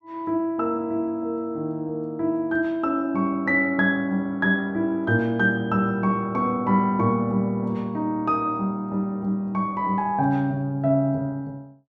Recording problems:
none

